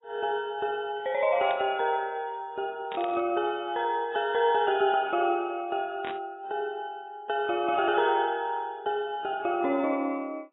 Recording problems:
codec artefacts; AAC, log-spectral distance 2 dB, nothing above 3.1 kHz
burst of static; at 1.5 s, at 3 s and at 6 s; peak -6 dB vs average level

